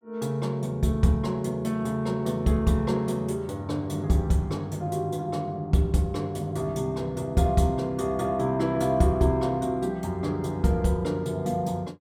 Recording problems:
none

